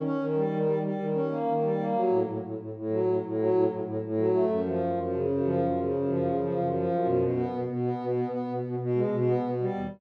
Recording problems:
none

